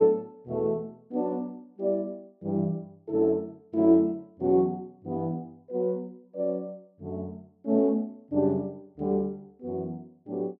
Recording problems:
none

